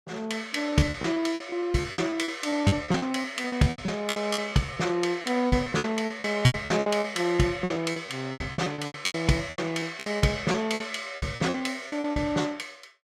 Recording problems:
packet loss; 20% of the sound replaced, filled with repeated pitch periods

